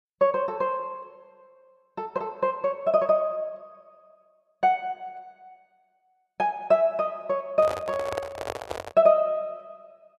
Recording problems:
microphone handling noise; from 7.5 to 9 s; peak -2 dB vs average level

